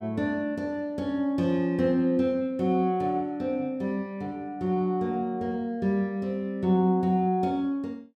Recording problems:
none

